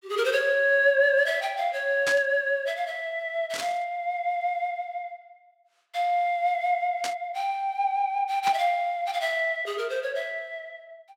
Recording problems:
burst of static; 4 times, first at 2 s; peak -1 dB vs average level

